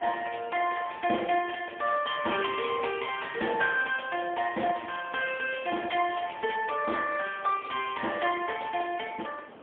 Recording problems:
phone line; 260 Hz to 3.1 kHz, AMR-NB, then MP3
background hiss; SNR 20 dB

